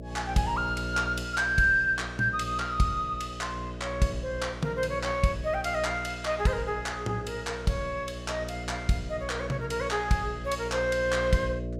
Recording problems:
hum; 60 Hz, harmonics up to 660 Hz, SNR 10 dB

